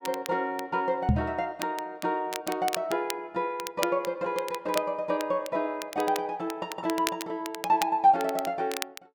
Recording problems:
crackling; vinyl, SNR 11 dB
knock on the microphone; at 1 s; peak +8 dB vs average level

